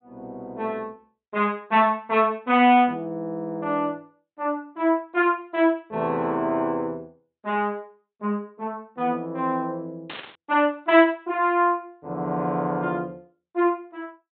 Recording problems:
treble missing; nothing above 4 kHz
burst of static; at 10 s; peak -8 dB vs average level

